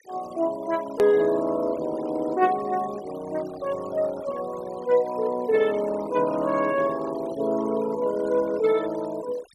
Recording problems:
noise reduction artefacts; signal-to-artefact ratio 19 dB
edit click; at 1 s

